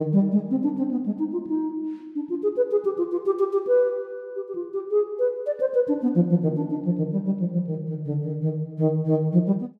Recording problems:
none

